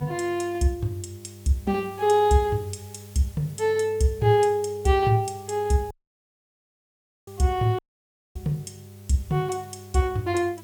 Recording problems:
mains hum; 50 Hz, harmonics up to 800 Hz, SNR 20 dB
hiss; slope +2 dB per octave, SNR 26 dB
dropout; at 6 s for 1.5 s and at 8 s for 0.5 s

